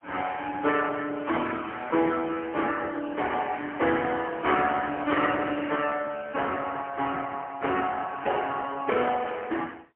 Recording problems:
telephone audio; 240 Hz to 3.3 kHz, AMR-NB, then MP3

